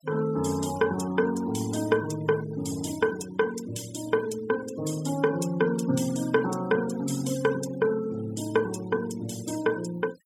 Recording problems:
denoising artefacts; signal-to-artefact ratio 15 dB

